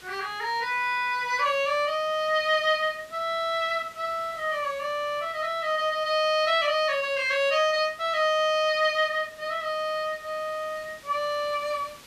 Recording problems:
background hiss; slope -1 dB per octave, SNR 23 dB

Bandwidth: 14.5 kHz